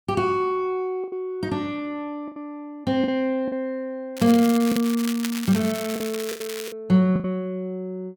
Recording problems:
lost packets; 6% of the sound replaced, filled with the last packet
crackle; from 4 to 6.5 s; loose cable, SNR 10 dB

